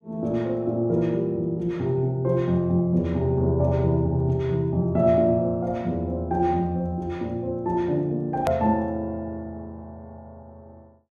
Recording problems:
edit click; at 8.5 s

